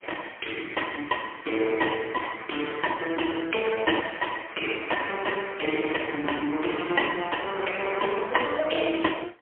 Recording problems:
telephone audio; 240 Hz to 3.3 kHz, AMR-NB, then MP3

